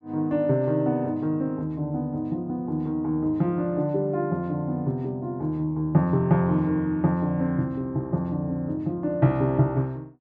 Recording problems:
none

